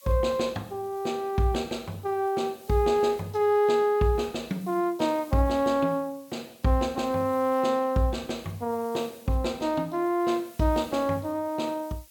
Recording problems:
background hiss; slope +6 dB per octave, SNR 25 dB

